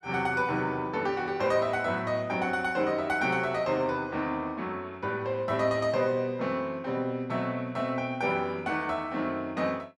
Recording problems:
none

